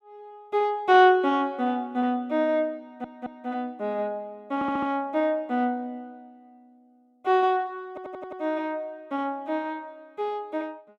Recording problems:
audio stuttering; at 3 s, at 4.5 s and at 8 s

